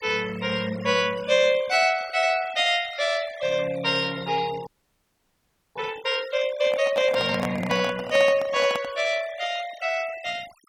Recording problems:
denoising artefacts; signal-to-artefact ratio 19 dB
audio freezing; at 4.5 s for 1 s
microphone handling noise; from 6.5 to 9 s; peak -3 dB vs average level

